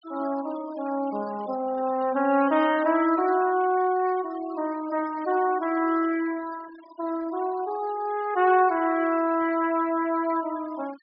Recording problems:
treble missing; nothing above 5.5 kHz
noise reduction artefacts; signal-to-artefact ratio 20 dB

